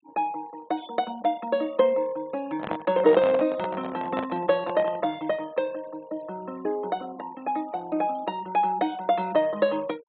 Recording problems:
low-pass filter; nothing above 4 kHz
noise reduction artefacts; signal-to-artefact ratio 24 dB
microphone handling noise; from 2.5 to 5 s; peak 0 dB vs average level

